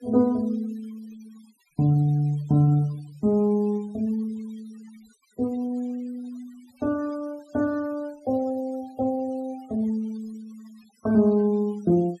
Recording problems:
noise reduction artefacts; signal-to-artefact ratio 27 dB

